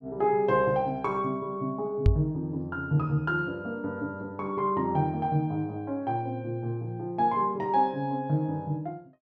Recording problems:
knock on the microphone; at 2 s; peak +9 dB vs average level

